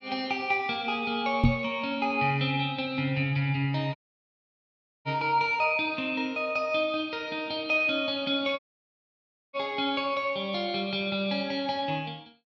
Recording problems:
microphone thump; at 1.5 s; peak +8 dB vs average level
dropout; at 4 s for 1 s and at 8.5 s for 1 s

